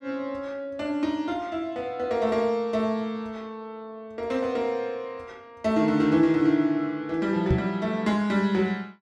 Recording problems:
microphone thump; at 7.5 s; peak +5 dB vs average level

